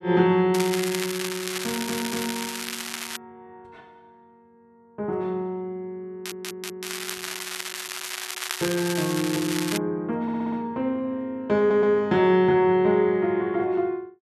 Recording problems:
crackling; from 0.5 to 3 s and from 6.5 to 10 s; loose cable, SNR 7 dB
stutter; 4 times, first at 1.5 s

